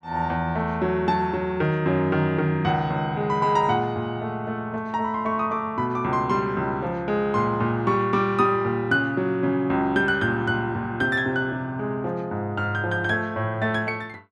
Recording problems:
none

